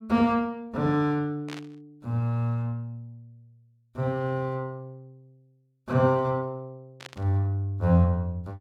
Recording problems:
burst of static; at 1.5 s and at 7 s; peak -9 dB vs average level

